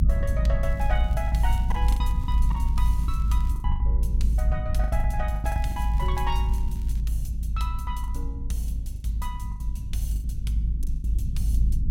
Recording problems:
rumble; below 58 Hz, strongest tone 54 Hz, SNR -9 dB
lost packets; 9% of the sound replaced, filled with the last packet
crackling; from 0.5 to 3.5 s and from 5.5 to 7 s; loose cable, SNR 19 dB

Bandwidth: 16.5 kHz